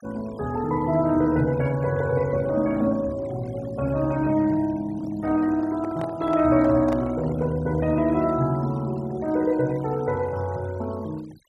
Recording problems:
noise reduction artefacts; signal-to-artefact ratio 22 dB
microphone handling noise; from 5 to 7.5 s; peak -5 dB vs average level

